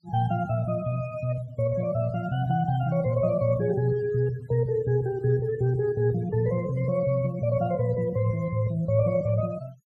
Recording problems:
noise reduction artefacts; signal-to-artefact ratio 25 dB

